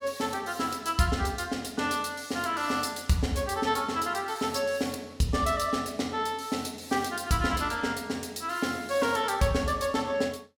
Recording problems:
none

